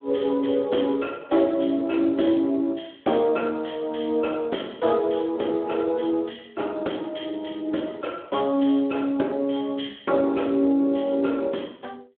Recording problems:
telephone audio; 240 Hz to 3.3 kHz, Speex

